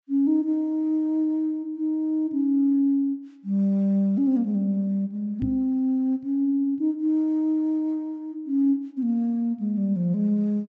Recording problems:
low-pass filter; nothing above 8 kHz
microphone bump; at 5.5 s; peak -2 dB vs average level

